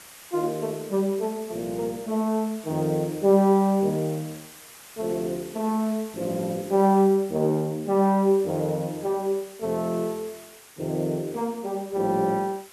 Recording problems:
background hiss; slope 0 dB per octave, SNR 20 dB

